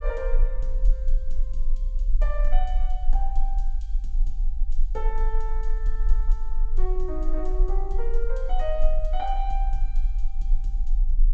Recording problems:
low-pass filter; nothing above 8 kHz
rumble; below 34 Hz, strongest tone 20 Hz, SNR -8 dB

